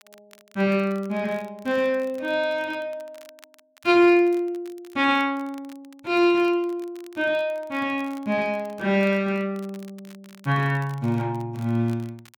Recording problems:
crackling; vinyl, SNR 29 dB

